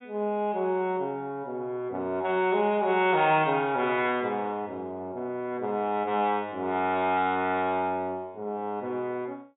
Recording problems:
treble missing; nothing above 4 kHz

